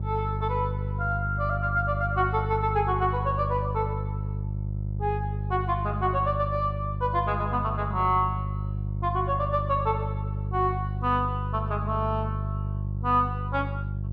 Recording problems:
hum; 50 Hz, harmonics up to 400 Hz, SNR 3 dB

